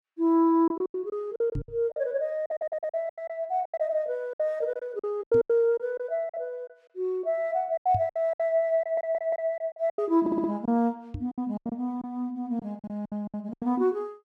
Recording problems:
lost packets; 14% of the sound replaced, filled with silence
knock on the microphone; 4 times, first at 1.5 s; peak -1 dB vs average level
audio stuttering; at 2.5 s, at 9 s and at 10 s

